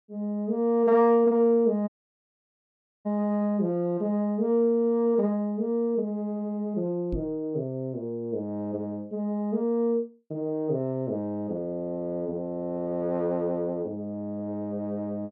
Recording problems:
audio cutting out; at 2 s for 1 s
microphone thump; at 7 s; peak -3 dB vs average level

